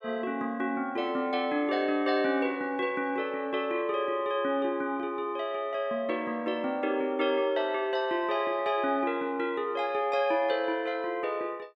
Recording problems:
none

